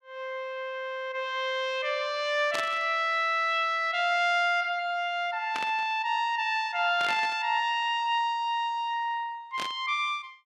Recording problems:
burst of static; 4 times, first at 2.5 s; peak -2 dB vs average level

